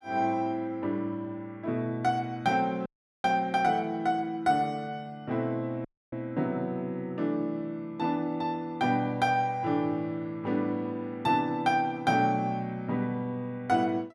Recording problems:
dropout; at 3 s and at 6 s

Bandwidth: 13.5 kHz